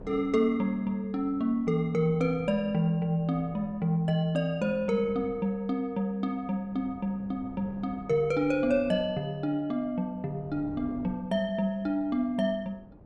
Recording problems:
wind on the microphone; below 380 Hz, SNR 21 dB

